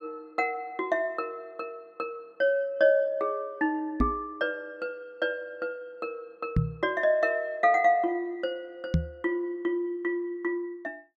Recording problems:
microphone thump; at 4 s, at 6.5 s and at 9 s; peak +7 dB vs average level

